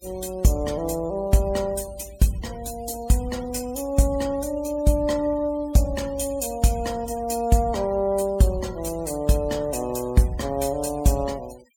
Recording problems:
denoising artefacts; signal-to-artefact ratio 21 dB

